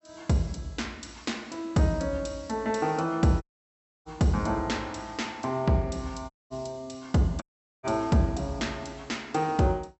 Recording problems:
treble missing; nothing above 8 kHz
audio cutting out; at 3.5 s for 0.5 s, at 6.5 s and at 7.5 s

